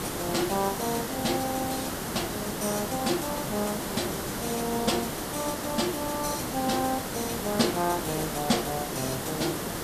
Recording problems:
hiss; slope -5 dB per octave, SNR 2 dB

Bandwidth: 14.5 kHz